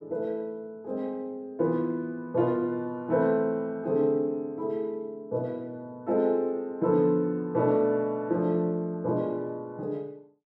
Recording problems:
none

